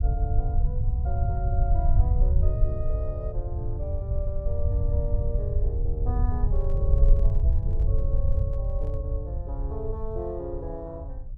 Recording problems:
rumble; below 78 Hz, SNR -10 dB
microphone handling noise; from 6.5 to 9 s; peak -11 dB vs average level

